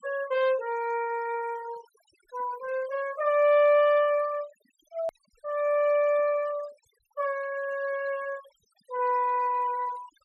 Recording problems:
denoising artefacts; signal-to-artefact ratio 22 dB
click at an edit; at 5 s

